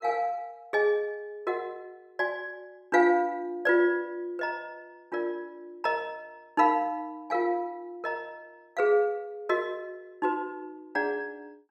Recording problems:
none

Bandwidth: 14.5 kHz